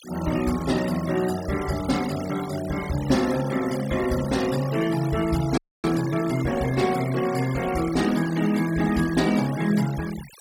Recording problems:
noise reduction artefacts; signal-to-artefact ratio 14 dB
frozen audio; at 5.5 s

